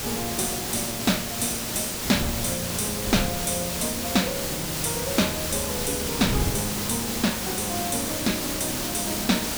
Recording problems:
hiss; slope -2 dB per octave, SNR 1 dB
wind noise; below 220 Hz, SNR 10 dB

